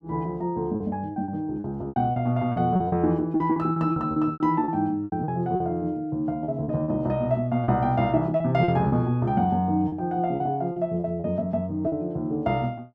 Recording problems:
lost packets; 11% of the sound replaced, filled with repeated pitch periods

